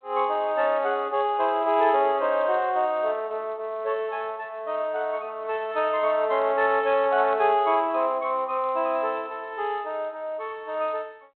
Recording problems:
telephone audio; 340 Hz to 3.7 kHz, G.726

